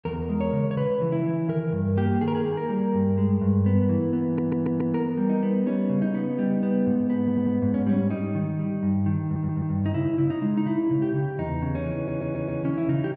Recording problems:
stutter; 4 times, first at 4.5 s

